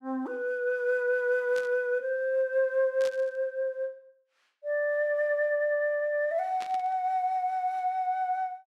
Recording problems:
static burst; at 1.5 s, at 3 s and at 6.5 s; peak -10 dB vs average level

